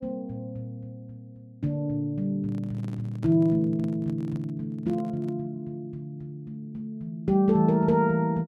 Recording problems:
microphone handling noise; from 2.5 to 5.5 s; peak -8 dB vs average level

